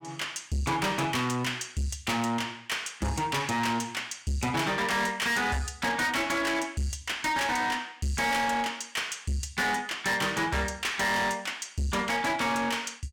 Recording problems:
distortion; soft clipping, signal-to-distortion ratio 7 dB

